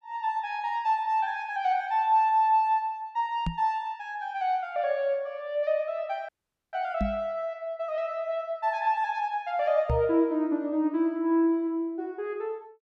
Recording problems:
microphone thump; at 3.5 s, at 7 s and at 10 s; peak +2 dB vs average level
audio cutting out; at 6.5 s

